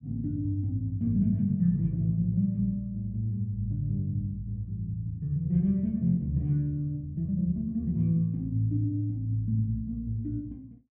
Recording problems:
none

